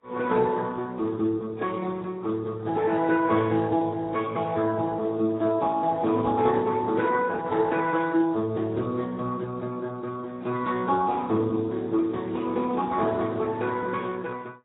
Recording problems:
lossy codec; Speex, then AAC, log-spectral distance 3 dB, nothing above 3.8 kHz

